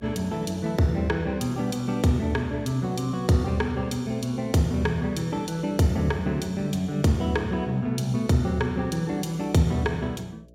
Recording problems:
hum; 60 Hz, harmonics up to 660 Hz, SNR 27 dB

